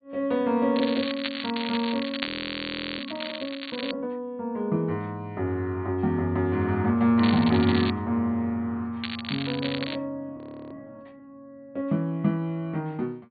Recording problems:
treble cut off; nothing above 4.5 kHz
crackling; from 1 to 4 s, at 7 s and at 9 s; loose cable, SNR 7 dB
frozen audio; at 2.5 s for 0.5 s and at 10 s

